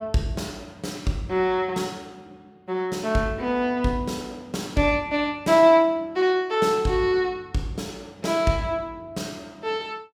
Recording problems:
none

